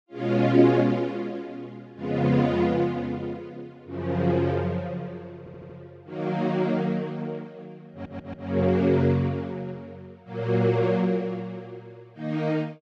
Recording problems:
stutter; at 5.5 s and at 8 s

